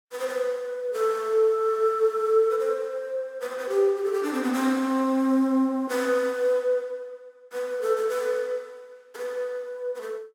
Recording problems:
none

